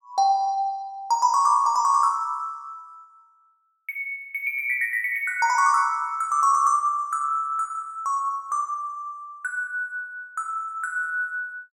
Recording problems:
none

